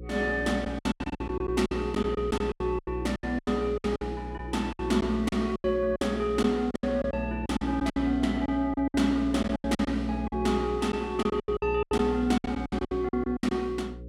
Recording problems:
hum; 60 Hz, harmonics up to 540 Hz, SNR 10 dB
lost packets; 16% of the sound replaced, filled with silence

